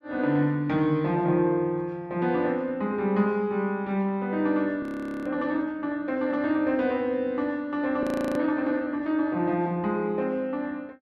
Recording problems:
audio freezing; at 5 s and at 8 s

